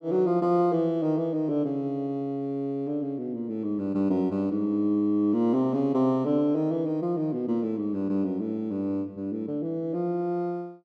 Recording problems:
none

